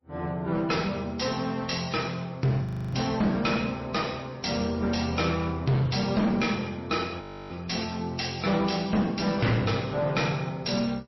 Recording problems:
lossy codec; MP3, then MP3, log-spectral distance 6 dB, nothing above 5.7 kHz
distorted audio; hard clipping, uneven, signal-to-distortion ratio 7 dB
audio freezing; at 2.5 s and at 7 s

